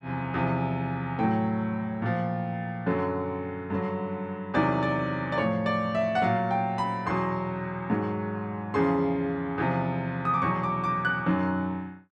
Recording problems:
none

